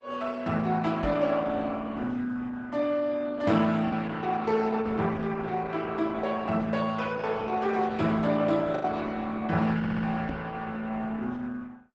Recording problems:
codec artefacts; Opus, log-spectral distance 3 dB, nothing above 8 kHz
packet loss; 1% of the sound replaced, filled with the last packet
microphone thump; at 1 s and at 10 s; peak -1 dB vs average level
audio stuttering; at 10 s

